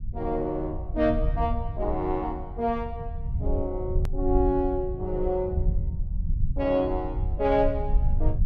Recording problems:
low-frequency rumble; below 74 Hz, SNR 3 dB
click at an edit; at 4 s

